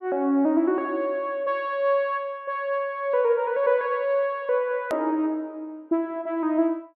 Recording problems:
edit click; at 5 s

